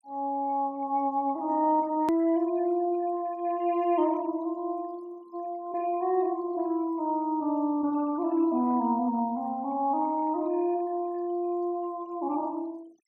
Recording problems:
noise reduction artefacts; signal-to-artefact ratio 27 dB
click at an edit; at 2 s

